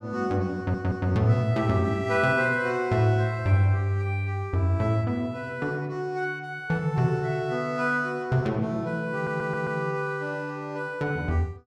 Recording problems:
stutter; at 0.5 s and at 9 s

